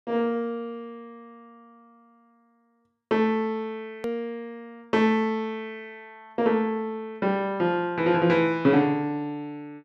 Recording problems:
hard cut with a click; at 4 s

